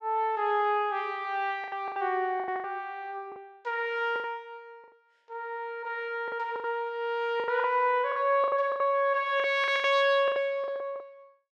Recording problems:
packet loss; 12% of the sound replaced, filled with the last packet

